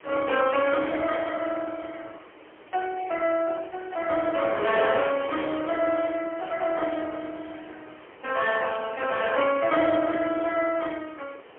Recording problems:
phone line; 300 Hz to 2.7 kHz, AMR-NB, then MP3
hiss; SNR 27 dB
wind on the microphone; below 1.7 kHz, SNR 21 dB

